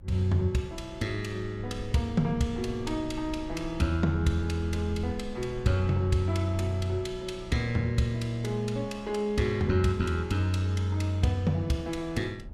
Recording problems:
low-frequency rumble; below 80 Hz, SNR 18 dB

